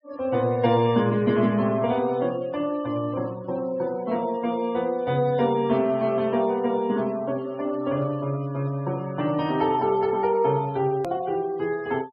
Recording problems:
low-pass filter; nothing above 5.5 kHz
denoising artefacts; signal-to-artefact ratio 25 dB
hard cut with a click; at 11 s

